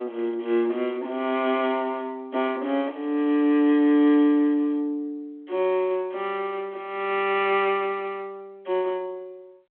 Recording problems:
phone line; 240 Hz to 3.5 kHz, G.726

